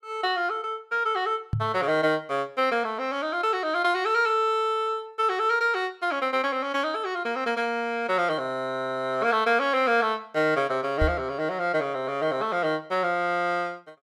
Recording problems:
knock on the microphone; at 1.5 s and at 11 s; peak +2 dB vs average level

